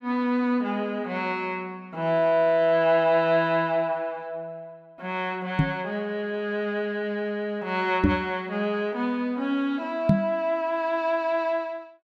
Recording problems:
microphone thump; at 5.5 s, at 8 s and at 10 s; peak +9 dB vs average level

